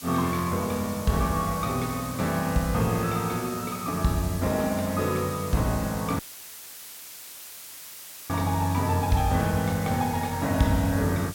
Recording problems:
hiss; slope +3 dB per octave, SNR 13 dB
dropout; at 6 s for 2 s; filled with static

